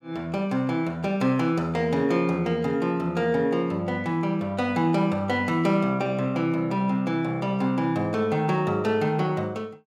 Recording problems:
none

